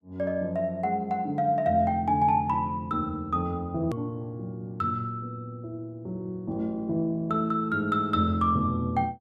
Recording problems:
click at an edit; at 4 s

